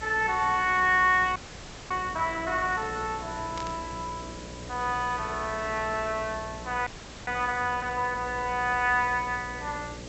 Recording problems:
low-pass filter; nothing above 7.9 kHz
electrical hum; 60 Hz, harmonics up to 600 Hz, SNR 16 dB
hiss; slope -2 dB per octave, SNR 16 dB
frozen audio; at 1.5 s for 0.5 s and at 7 s
static burst; at 3.5 s; peak -9 dB vs average level

